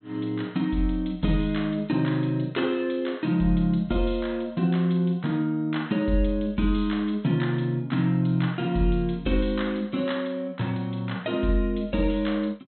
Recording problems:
treble missing; nothing above 4.2 kHz

